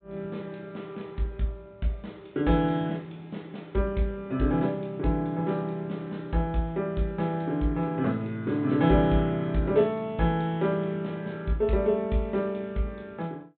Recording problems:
low-pass filter; nothing above 4 kHz

